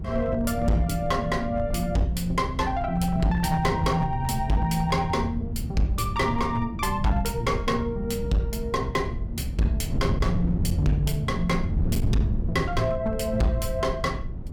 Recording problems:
distortion; hard clipping, signal-to-distortion ratio 11 dB
rumble; below 130 Hz, SNR 11 dB
wind noise; below 140 Hz, SNR 7 dB

